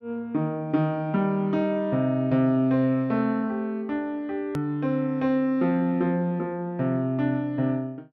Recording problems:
click at an edit; at 4.5 s

